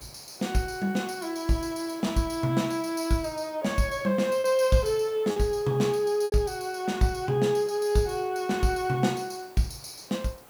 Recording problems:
background hiss; SNR 24 dB
packet loss; 1.6% of the sound replaced, filled with repeated pitch periods

